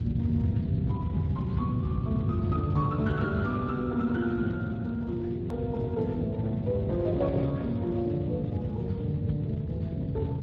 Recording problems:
lossy codec; Speex, log-spectral distance 2 dB
electrical hum; 50 Hz, harmonics up to 500 Hz, SNR 15 dB
rumble; below 170 Hz, SNR 1 dB
edit click; at 5.5 s

